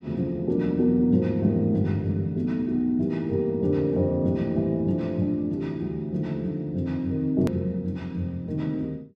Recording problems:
hard cut with a click; at 7.5 s

